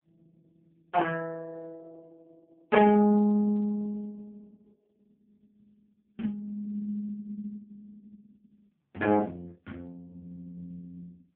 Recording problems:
telephone audio; 150 Hz to 3 kHz, AMR-NB

